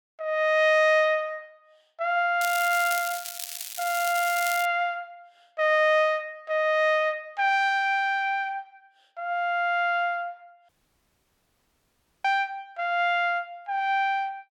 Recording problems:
crackling; from 2.5 to 4.5 s; loose cable, SNR 9 dB
audio cutting out; at 11 s for 1.5 s

